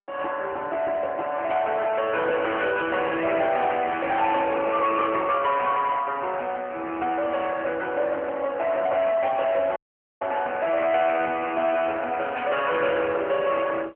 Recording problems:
telephone audio; 340 Hz to 3.2 kHz, AMR-NB
distorted audio; soft clipping, signal-to-distortion ratio 11 dB
audio cutting out; at 10 s
static burst; at 12 s; peak -7 dB vs average level

